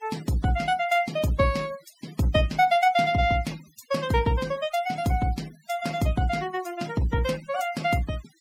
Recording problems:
noise reduction artefacts; signal-to-artefact ratio 21 dB

